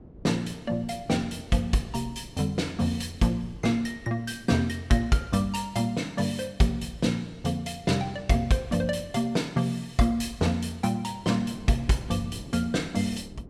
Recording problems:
wind on the microphone; below 310 Hz, SNR 21 dB

